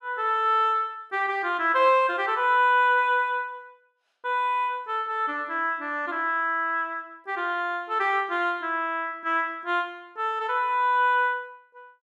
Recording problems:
none

